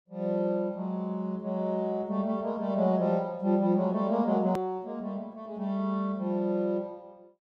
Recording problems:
click at an edit; at 4.5 s

